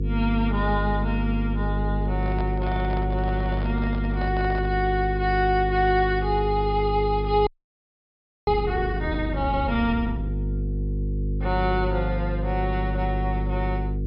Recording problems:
low-pass filter; nothing above 5.5 kHz
hum; 50 Hz, harmonics up to 500 Hz, SNR 2 dB
handling noise; from 2 to 5 s; peak -5 dB vs average level
frozen audio; at 7.5 s for 1 s

